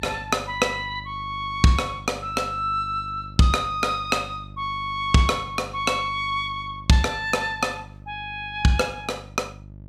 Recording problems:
hum; 50 Hz, harmonics up to 650 Hz, SNR 17 dB

